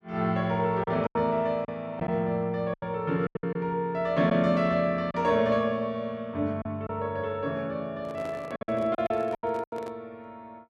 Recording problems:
packet loss; 8% of the sound replaced, filled with silence
handling noise; from 8 to 10 s; peak -8 dB vs average level

